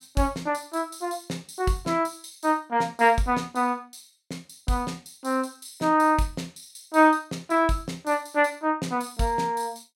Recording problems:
none

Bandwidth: 16 kHz